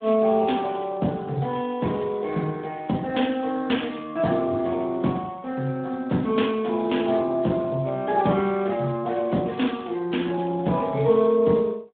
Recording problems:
phone line; 170 Hz to 3.6 kHz, Speex

